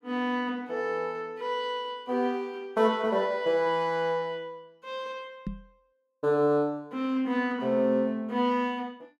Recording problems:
knock on the microphone; at 5.5 s; peak -2 dB vs average level

